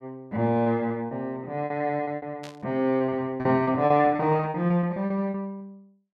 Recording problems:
lost packets; 14% of the sound replaced, filled with repeated pitch periods
static burst; at 2.5 s; peak -13 dB vs average level

